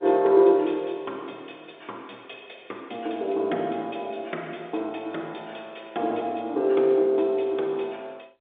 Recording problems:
telephone audio; 280 Hz to 3.6 kHz, G.711

